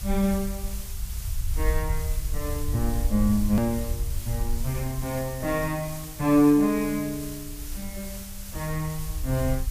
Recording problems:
background hiss; slope +1 dB per octave, SNR 13 dB
low-frequency rumble; below 66 Hz, SNR 7 dB
click at an edit; at 3.5 s

